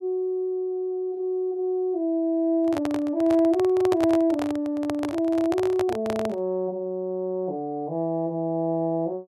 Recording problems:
handling noise; from 2.5 to 6.5 s; peak 0 dB vs average level

